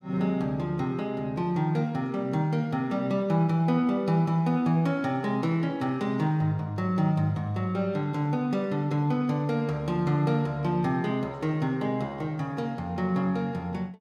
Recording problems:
none

